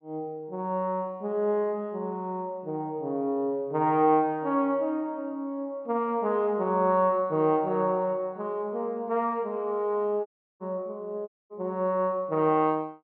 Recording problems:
dropout; at 10 s and at 11 s

